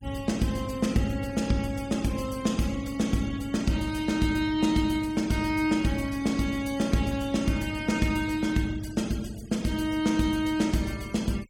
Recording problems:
denoising artefacts; signal-to-artefact ratio 19 dB

